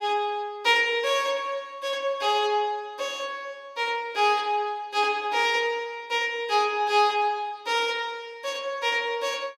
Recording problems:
none

